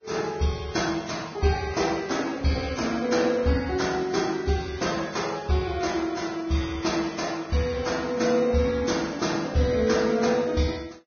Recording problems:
lossy codec; Vorbis, log-spectral distance 4 dB, nothing above 6.5 kHz

